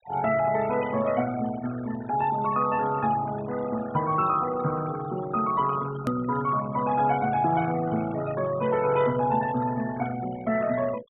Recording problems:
treble cut off; nothing above 4 kHz
denoising artefacts; signal-to-artefact ratio 14 dB
edit click; at 6 s

